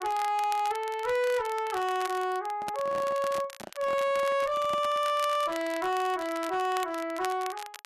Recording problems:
distorted audio; hard clipping, signal-to-distortion ratio 11 dB
crackling; vinyl, SNR 16 dB
handling noise; from 2.5 to 5 s; peak -6 dB vs average level

